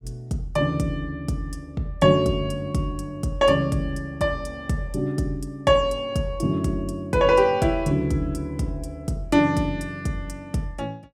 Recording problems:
none

